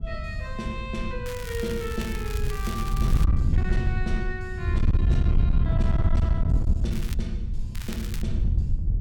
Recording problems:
distorted audio; hard clipping, uneven, signal-to-distortion ratio 12 dB
wind on the microphone; below 98 Hz, SNR -8 dB
crackling; from 1.5 to 3 s, at 7 s and at 8 s; loose cable, SNR 7 dB

